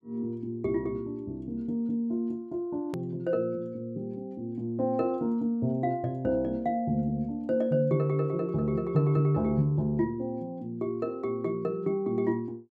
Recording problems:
hard cut with a click; at 3 s

